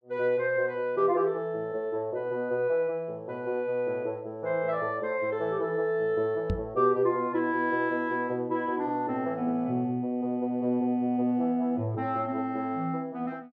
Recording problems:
microphone bump; at 6.5 s; peak +2 dB vs average level

